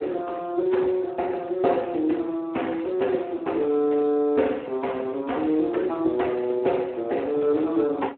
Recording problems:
phone line; 240 Hz to 3.2 kHz, Speex

